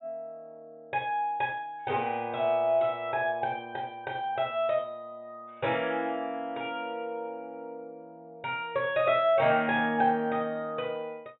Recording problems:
treble missing; nothing above 3.8 kHz

